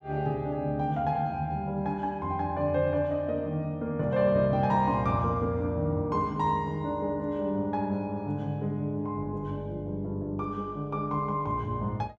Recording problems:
none

